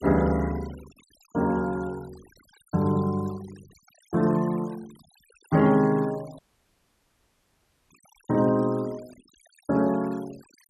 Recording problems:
noise reduction artefacts; signal-to-artefact ratio 24 dB
audio cutting out; at 6.5 s for 1.5 s

